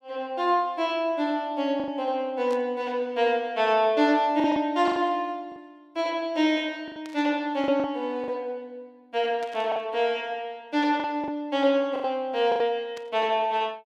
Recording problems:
lost packets; 6% of the sound replaced, filled with the last packet
static burst; 4 times, first at 2.5 s; peak -14 dB vs average level

